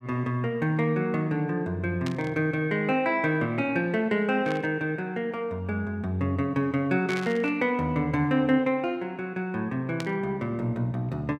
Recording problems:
static burst; 4 times, first at 2 s; peak -6 dB vs average level

